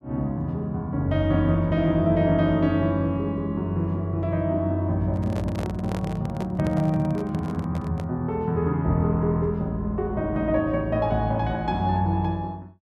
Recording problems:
microphone handling noise; from 5 to 8 s; peak -6 dB vs average level

